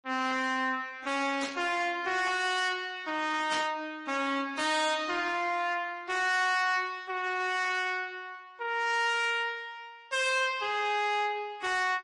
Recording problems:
lossy compression; AAC, then MP3, log-spectral distance 3 dB, nothing above 10.4 kHz
distorted audio; soft clipping, signal-to-distortion ratio 11 dB
static burst; at 1.5 s and at 3.5 s; peak -2 dB vs average level

